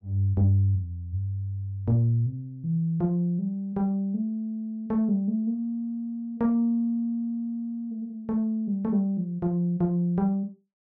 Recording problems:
none

